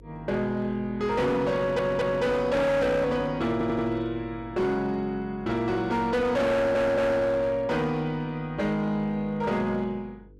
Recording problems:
distorted audio; hard clipping, signal-to-distortion ratio 8 dB
electrical hum; 50 Hz, harmonics up to 500 Hz, SNR 22 dB
audio stuttering; at 1.5 s, at 3.5 s and at 6.5 s

